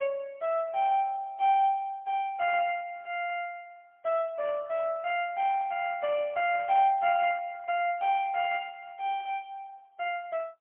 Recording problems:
telephone audio; 300 Hz to 3.3 kHz, AMR-NB, then MP3

